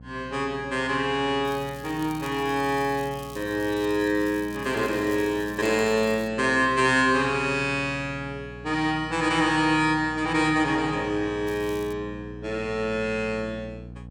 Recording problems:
hum; 60 Hz, harmonics up to 780 Hz, SNR 18 dB
crackling; from 1.5 to 6.5 s and at 11 s; loose cable, SNR 22 dB

